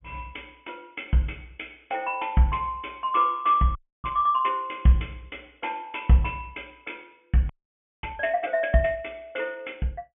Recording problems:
treble missing; nothing above 3.3 kHz
frozen audio; at 4 s and at 7.5 s for 0.5 s

